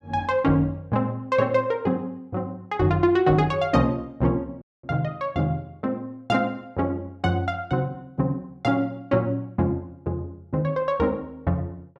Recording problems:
dropout; at 4.5 s

